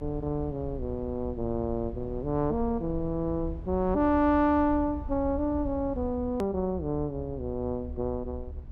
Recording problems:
low-frequency rumble; below 74 Hz, SNR 11 dB
click at an edit; at 6.5 s

